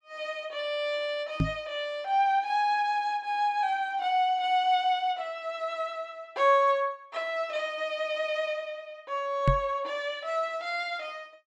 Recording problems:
microphone bump; at 1.5 s and at 9.5 s; peak +7 dB vs average level

